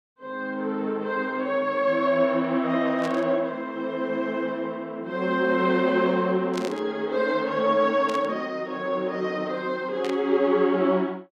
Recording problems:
static burst; 4 times, first at 3 s; peak -7 dB vs average level

